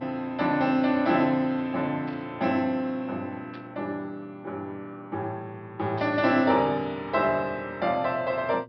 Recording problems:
treble missing; nothing above 5.5 kHz
hum; 60 Hz, harmonics up to 1.1 kHz, SNR 23 dB
static burst; at 2 s, at 3.5 s and at 6 s; peak -16 dB vs average level

